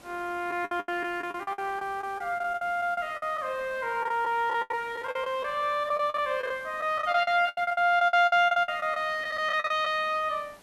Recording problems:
background hiss; slope -4 dB per octave, SNR 25 dB
packet loss; 15% of the sound replaced, filled with the last packet

